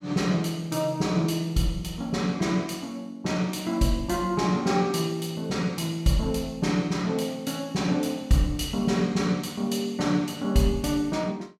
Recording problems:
none

